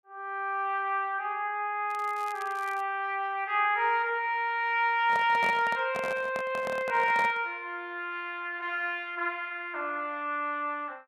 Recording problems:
crackling; at 2 s; loose cable, SNR 23 dB
microphone handling noise; from 5 to 7.5 s; peak -3 dB vs average level

